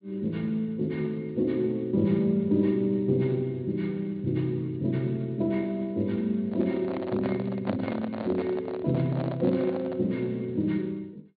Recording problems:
treble cut off; nothing above 4.1 kHz
lossy codec; Speex, log-spectral distance 2 dB
handling noise; from 6.5 to 10 s; peak -1 dB vs average level

